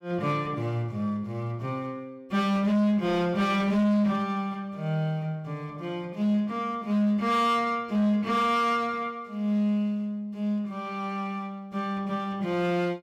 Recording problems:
distorted audio; hard clipping, signal-to-distortion ratio 10 dB

